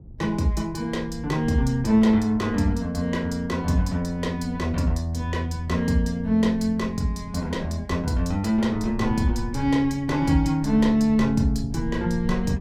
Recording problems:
rumble; below 120 Hz, SNR 15 dB

